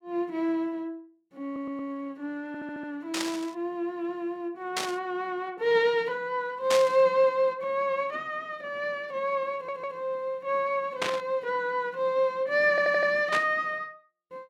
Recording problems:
stutter; 4 times, first at 1.5 s
burst of static; 5 times, first at 3 s; peak +3 dB vs average level

